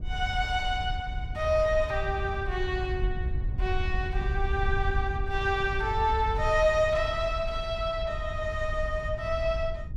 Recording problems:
wind noise; below 78 Hz, SNR 5 dB

